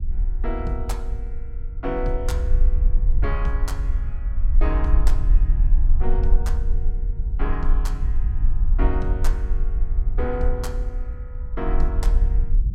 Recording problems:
low-frequency rumble; below 48 Hz, strongest tone 24 Hz, SNR -7 dB

